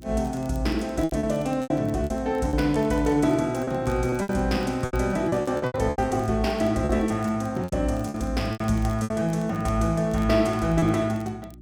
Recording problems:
electrical hum; 60 Hz, harmonics up to 360 Hz, SNR 22 dB
crackling; vinyl, SNR 29 dB
packet loss; 11% of the sound replaced, filled with repeated pitch periods

